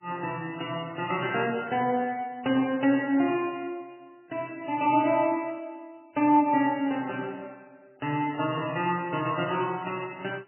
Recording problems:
codec artefacts; MP3, log-spectral distance 4 dB, nothing above 2.8 kHz

